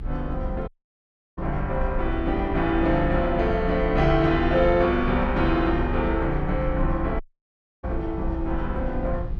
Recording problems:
hum; 60 Hz, harmonics up to 2 kHz, SNR 23 dB
low-frequency rumble; below 60 Hz, strongest tone 30 Hz, SNR 7 dB
audio cutting out; at 0.5 s for 0.5 s and at 7 s for 0.5 s

